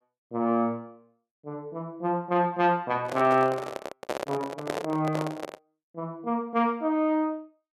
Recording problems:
microphone handling noise; from 3 to 5.5 s; peak +1 dB vs average level

